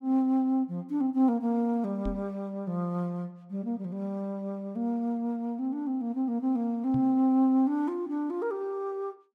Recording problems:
microphone thump; at 2 s and at 7 s; peak -1 dB vs average level

